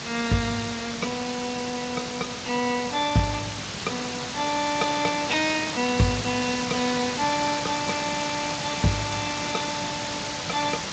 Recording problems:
lossy codec; Speex, log-spectral distance 18 dB, nothing above 7.3 kHz
electrical hum; 50 Hz, harmonics up to 550 Hz, SNR 22 dB
background hiss; slope -1 dB per octave, SNR 3 dB

